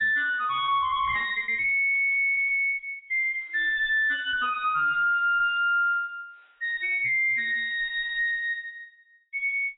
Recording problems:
lossy codec; AAC, log-spectral distance 2 dB, nothing above 3.4 kHz
distortion; soft clipping, signal-to-distortion ratio 7 dB
lost packets; 2% of the sound replaced, filled with repeated pitch periods

